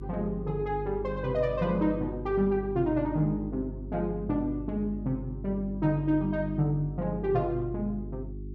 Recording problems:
mains hum; 50 Hz, harmonics up to 400 Hz, SNR 10 dB

